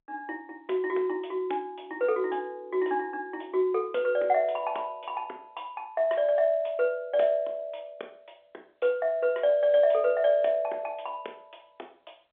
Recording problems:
telephone audio; 320 Hz to 3.7 kHz, G.711

